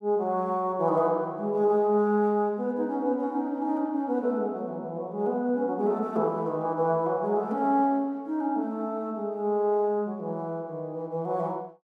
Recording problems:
none

